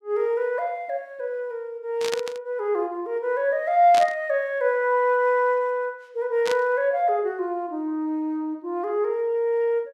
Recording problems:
static burst; at 2 s, at 4 s and at 6.5 s; peak -1 dB vs average level

